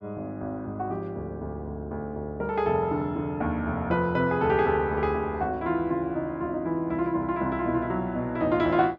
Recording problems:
none

